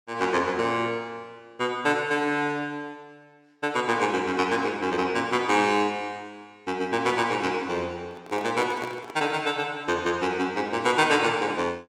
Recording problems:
handling noise; from 8 to 9.5 s; peak -5 dB vs average level

